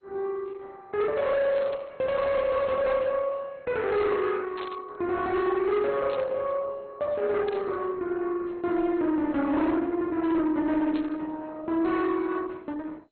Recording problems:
lossy codec; Opus, then MP2, log-spectral distance 3 dB, nothing above 4.1 kHz
distortion; soft clipping, signal-to-distortion ratio 12 dB
burst of static; 5 times, first at 1.5 s; peak -11 dB vs average level

